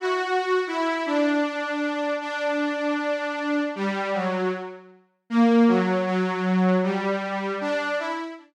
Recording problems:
none

